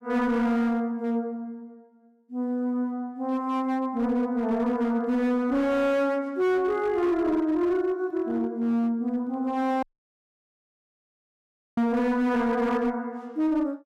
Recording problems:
distortion; hard clipping, signal-to-distortion ratio 11 dB
audio cutting out; at 10 s for 2 s

